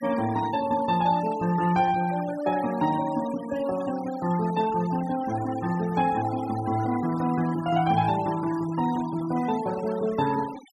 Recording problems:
denoising artefacts; signal-to-artefact ratio 16 dB

